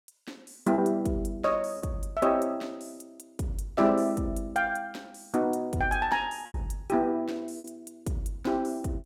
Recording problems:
packet loss; 3% of the sound replaced, filled with repeated pitch periods

